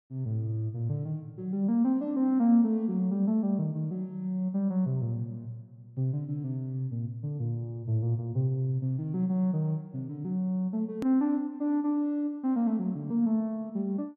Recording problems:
click at an edit; at 11 s

